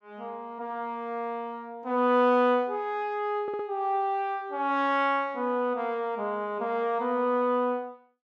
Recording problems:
audio stuttering; at 3.5 s

